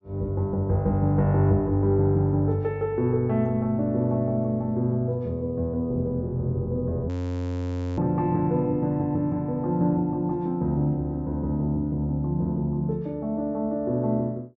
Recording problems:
treble cut off; nothing above 8 kHz
frozen audio; at 7 s for 1 s

